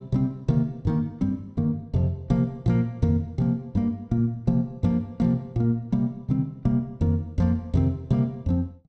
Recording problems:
none

